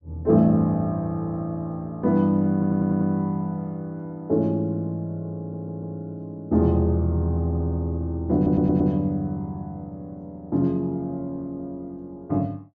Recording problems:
treble cut off; nothing above 7.3 kHz
stutter; at 2.5 s, at 5.5 s and at 8.5 s

